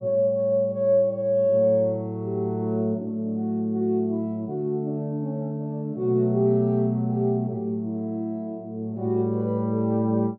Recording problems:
low-pass filter; nothing above 5.5 kHz

